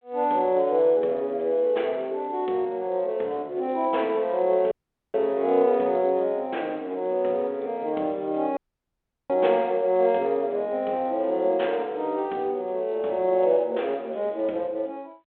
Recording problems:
telephone audio; 240 Hz to 3.6 kHz, G.726
dropout; at 4.5 s and at 8.5 s for 0.5 s

